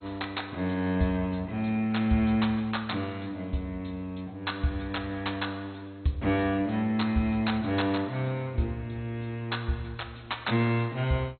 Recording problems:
codec artefacts; MP2, log-spectral distance 5 dB, nothing above 4.2 kHz

